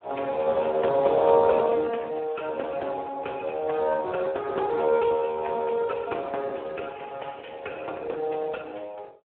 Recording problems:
phone line; 300 Hz to 2.5 kHz, Speex

